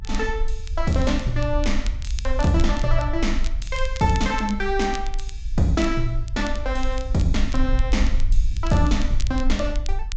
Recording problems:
low-pass filter; nothing above 8 kHz
low-frequency rumble; below 50 Hz, strongest tone 20 Hz, SNR 3 dB
crackle; vinyl, SNR 17 dB

